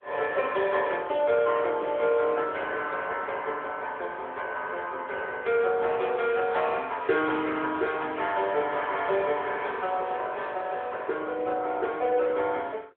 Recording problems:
phone line; 340 Hz to 3.7 kHz, AMR-NB

